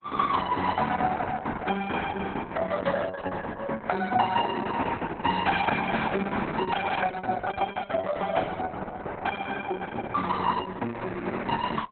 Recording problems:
lossy codec; Opus, log-spectral distance 4 dB, nothing above 3.8 kHz

